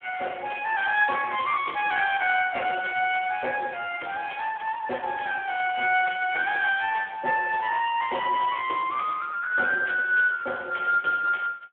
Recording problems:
telephone audio; 340 Hz to 3.3 kHz, Speex

